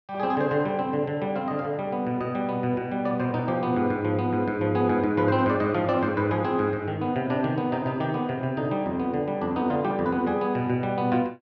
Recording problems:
none

